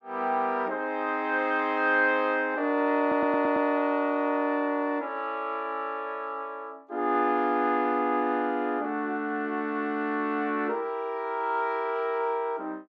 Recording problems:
audio stuttering; at 3 s

